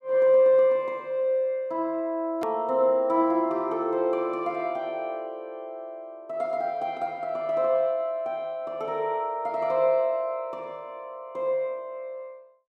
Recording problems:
hard cut with a click; at 2.5 s

